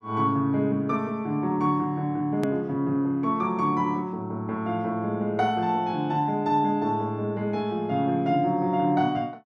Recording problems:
click at an edit; at 2.5 s

